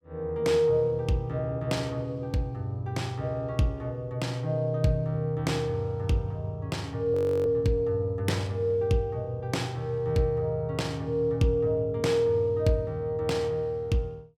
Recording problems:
audio freezing; at 7 s

